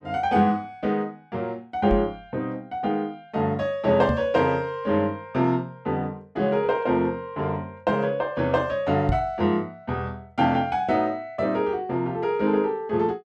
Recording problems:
knock on the microphone; at 2 s, at 4 s and at 9 s; peak +2 dB vs average level

